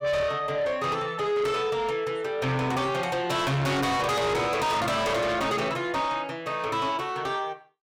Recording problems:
distortion; soft clipping, signal-to-distortion ratio 6 dB

